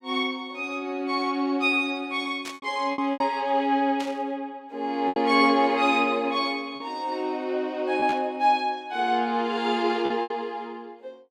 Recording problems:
packet loss; 5% of the sound replaced, filled with repeated pitch periods
burst of static; at 2.5 s, at 4 s and at 8 s; peak -8 dB vs average level

